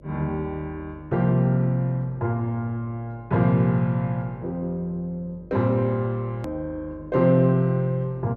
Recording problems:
hum; 50 Hz, harmonics up to 600 Hz, SNR 24 dB
edit click; at 6.5 s

